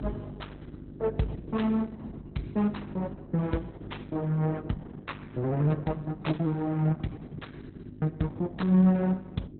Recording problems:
lossy codec; Opus, log-spectral distance 3 dB, nothing above 4 kHz
hum; 50 Hz, harmonics up to 450 Hz, SNR 13 dB

